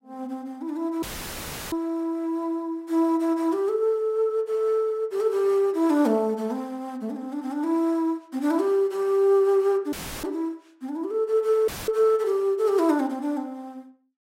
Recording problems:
dropout; at 1 s for 0.5 s, at 10 s and at 12 s; filled with static

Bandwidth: 16 kHz